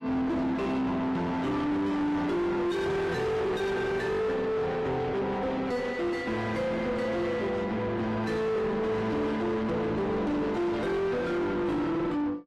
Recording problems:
lossy compression; AAC, log-spectral distance 2 dB, nothing above 13.1 kHz
distortion; soft clipping, signal-to-distortion ratio 4 dB

